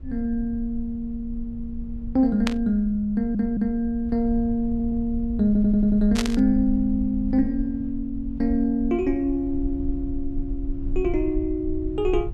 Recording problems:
rumble; below 58 Hz, strongest tone 22 Hz, SNR 11 dB
static burst; at 2.5 s and at 6 s; peak 0 dB vs average level
stutter; at 3 s, at 4.5 s and at 5.5 s

